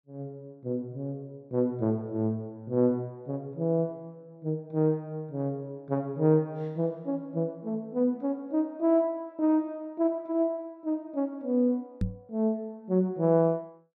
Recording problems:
knock on the microphone; at 12 s; peak +3 dB vs average level

